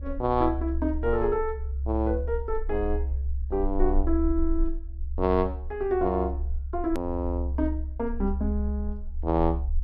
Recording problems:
treble missing; nothing above 5.7 kHz
low-frequency rumble; below 68 Hz, SNR 4 dB
hard cut with a click; at 7 s

